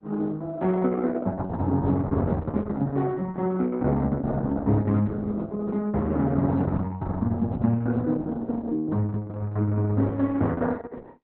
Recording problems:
lossy codec; Opus, log-spectral distance 3 dB

